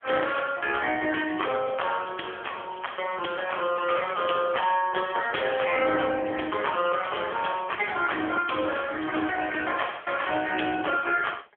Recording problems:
phone line; 260 Hz to 3.3 kHz, AMR-NB

